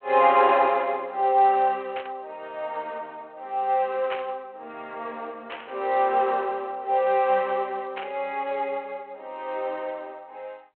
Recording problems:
telephone audio; 320 Hz to 3.3 kHz, G.726
static burst; 4 times, first at 2 s; peak -5 dB vs average level

